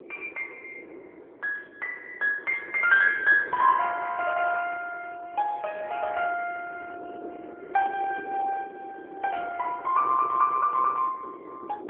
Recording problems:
phone line; 340 Hz to 3.2 kHz, AMR-NB
wind noise; below 490 Hz, SNR 18 dB

